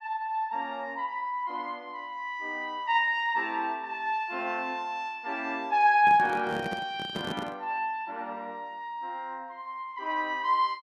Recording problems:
handling noise; from 6 to 7.5 s; peak -1 dB vs average level

